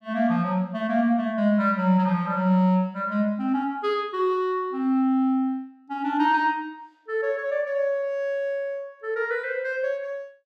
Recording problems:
none

